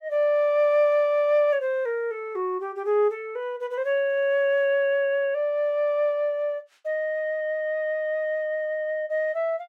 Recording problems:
none

